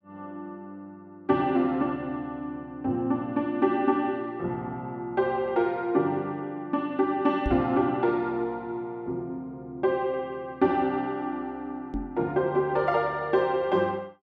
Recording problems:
microphone bump; at 7.5 s and at 12 s; peak 0 dB vs average level

